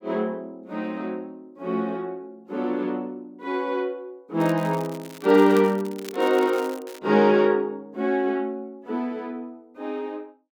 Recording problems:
crackle; from 4.5 to 7 s; loose cable, SNR 19 dB

